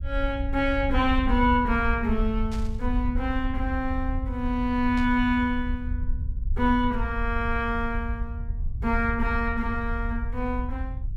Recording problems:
rumble; below 70 Hz, SNR 5 dB
burst of static; at 2.5 s and at 5 s; peak -11 dB vs average level

